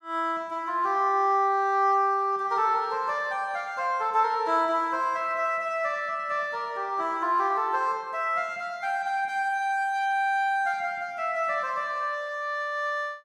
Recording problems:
none

